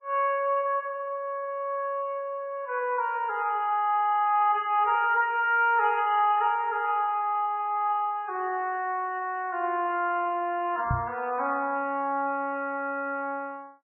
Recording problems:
codec artefacts; MP3, log-spectral distance 2 dB, nothing above 2.5 kHz
microphone thump; at 11 s; peak +2 dB vs average level

